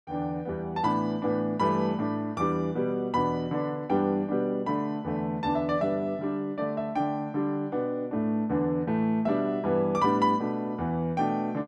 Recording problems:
none

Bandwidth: 12 kHz